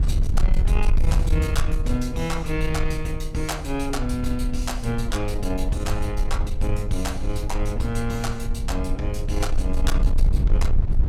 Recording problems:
distorted audio; soft clipping, signal-to-distortion ratio 12 dB
rumble; below 56 Hz, strongest tone 20 Hz, SNR -1 dB

